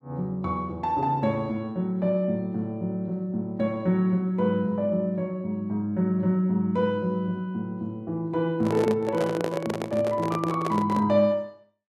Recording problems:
handling noise; from 8.5 to 11 s; peak 0 dB vs average level

